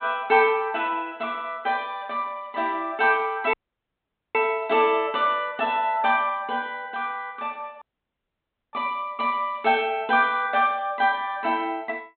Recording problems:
treble missing; nothing above 4 kHz
audio cutting out; at 3.5 s for 1 s and at 8 s for 1 s

